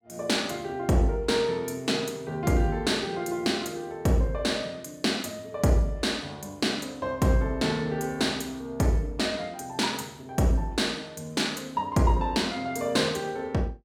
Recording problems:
none

